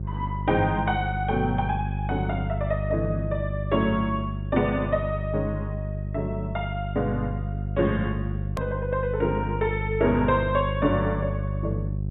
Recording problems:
treble missing; nothing above 3.7 kHz
hum; 50 Hz, harmonics up to 400 Hz, SNR 3 dB
hard cut with a click; at 8.5 s

